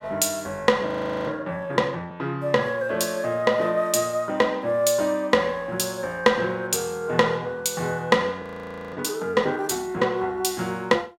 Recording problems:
audio freezing; at 1 s and at 8.5 s for 0.5 s

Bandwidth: 16.5 kHz